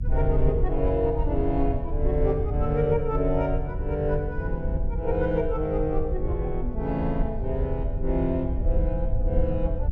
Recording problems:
electrical hum; 60 Hz, harmonics up to 300 Hz, SNR 19 dB
low-frequency rumble; below 72 Hz, SNR 2 dB

